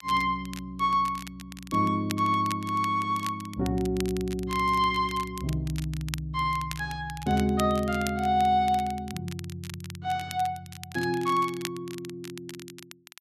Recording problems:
crackling; vinyl, SNR 15 dB

